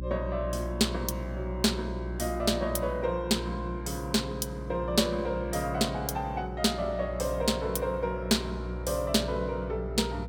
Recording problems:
hum; 60 Hz, harmonics up to 360 Hz, SNR 8 dB

